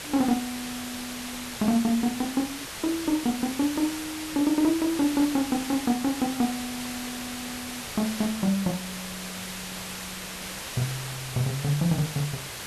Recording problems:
hiss; slope -1 dB per octave, SNR 7 dB

